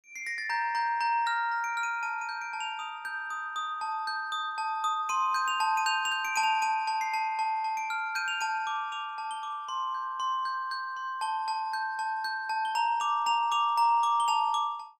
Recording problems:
none

